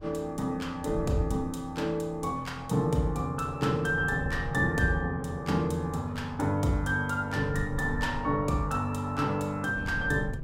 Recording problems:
wind on the microphone; below 130 Hz, SNR 13 dB

